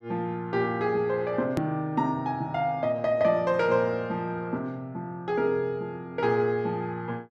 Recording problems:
hard cut with a click; at 1.5 s

